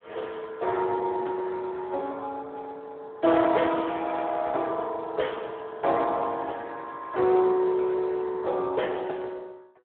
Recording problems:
telephone audio; 300 Hz to 3.6 kHz, Speex

